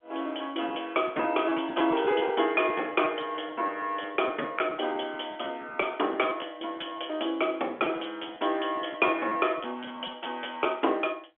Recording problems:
phone line; 260 Hz to 3.5 kHz, G.711
packet loss; 8% of the sound replaced, filled with repeated pitch periods

